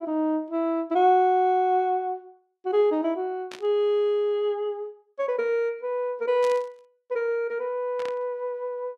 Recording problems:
burst of static; at 3.5 s, at 6.5 s and at 8 s; peak -10 dB vs average level

